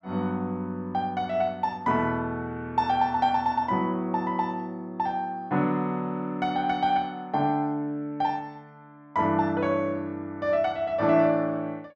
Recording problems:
none

